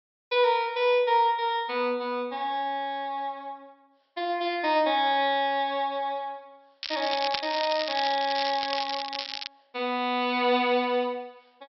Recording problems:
treble cut off; nothing above 5.6 kHz
crackling; from 7 to 9.5 s; loose cable, SNR 6 dB

